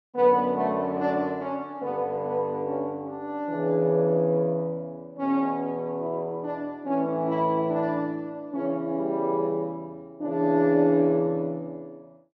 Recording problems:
none

